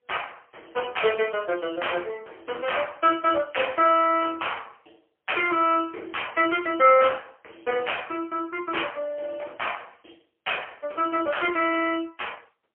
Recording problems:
phone line; 280 Hz to 3.2 kHz, AMR-NB, then MP3

